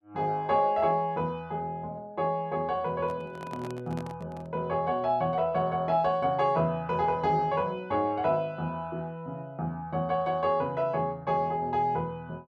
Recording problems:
handling noise; from 3 to 4.5 s; peak -8 dB vs average level

